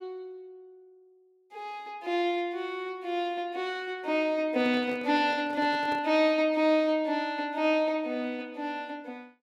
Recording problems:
handling noise; from 4.5 to 6 s; peak -10 dB vs average level

